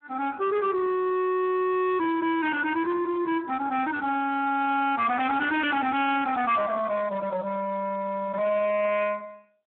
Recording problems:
phone line; 930 Hz to 3.5 kHz, Speex
distortion; soft clipping, signal-to-distortion ratio 8 dB

